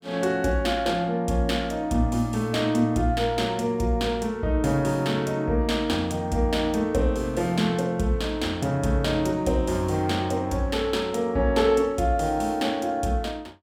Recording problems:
none

